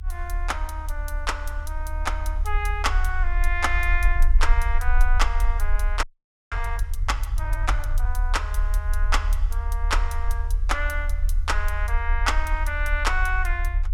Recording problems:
low-frequency rumble; below 44 Hz, SNR -2 dB
frozen audio; at 6 s

